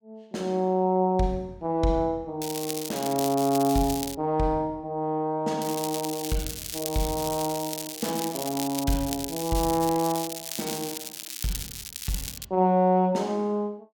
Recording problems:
crackle; from 2.5 to 4 s and from 5.5 to 12 s; loose cable, SNR 7 dB

